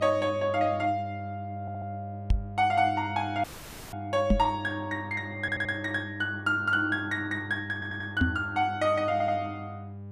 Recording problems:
hum; 50 Hz, harmonics up to 600 Hz, SNR 12 dB
stutter; 4 times, first at 1.5 s
microphone thump; at 2.5 s, at 4.5 s and at 8 s; peak +8 dB vs average level
dropout; at 3.5 s

